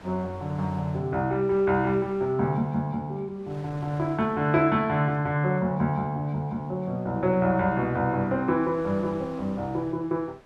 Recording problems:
wind noise; below 1.6 kHz, SNR 24 dB

